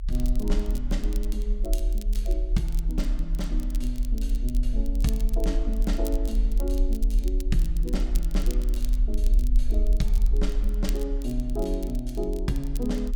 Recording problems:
rumble; below 42 Hz, strongest tone 40 Hz, SNR -5 dB
crackling; vinyl, SNR 14 dB

